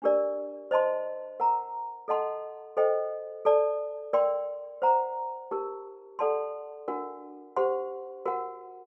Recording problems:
none

